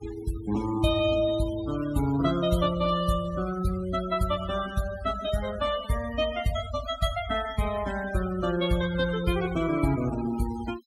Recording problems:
denoising artefacts; signal-to-artefact ratio 13 dB

